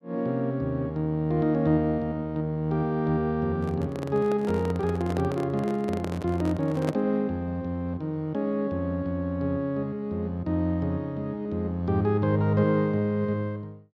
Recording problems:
handling noise; from 3.5 to 7 s; peak -1 dB vs average level

